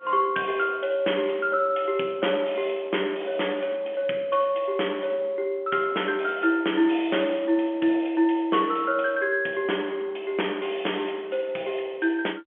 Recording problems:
telephone audio; 240 Hz to 3.4 kHz, G.711

